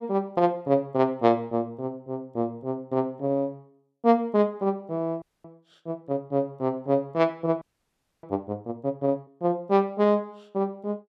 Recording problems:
frozen audio; at 5 s and at 7.5 s for 0.5 s

